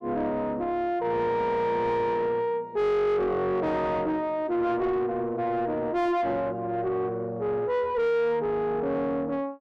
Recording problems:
distortion; soft clipping, signal-to-distortion ratio 7 dB

